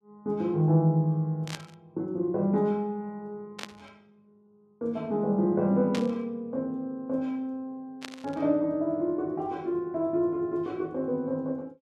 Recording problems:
burst of static; 4 times, first at 1.5 s; peak -3 dB vs average level

